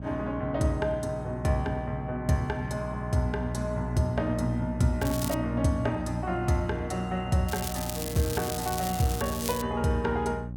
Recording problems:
electrical hum; 60 Hz, harmonics up to 540 Hz, SNR 7 dB
crackle; at 5 s and from 7.5 to 9.5 s; loose cable, SNR 7 dB

